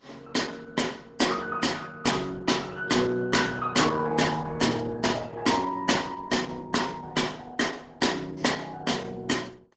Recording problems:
codec artefacts; AAC, then Opus, log-spectral distance 5 dB, nothing above 7.6 kHz

